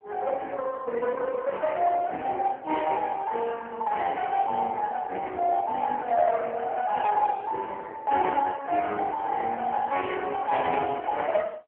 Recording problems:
telephone audio; 320 Hz to 3.3 kHz, AMR-NB

